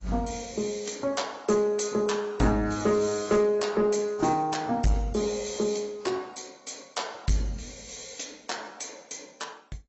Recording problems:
lossy codec; AAC, log-spectral distance 7 dB, nothing above 7.3 kHz
distortion; soft clipping, signal-to-distortion ratio 11 dB

